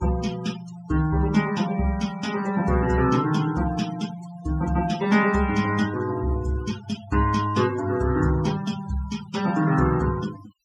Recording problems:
noise reduction artefacts; signal-to-artefact ratio 15 dB

